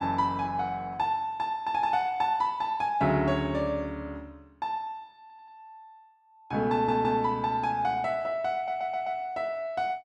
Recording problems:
audio stuttering; at 5 s, at 6.5 s and at 8.5 s

